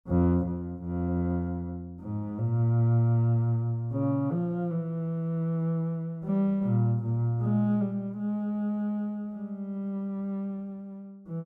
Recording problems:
none

